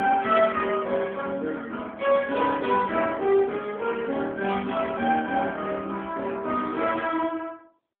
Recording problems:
telephone audio; 190 Hz to 3.4 kHz, AMR-NB

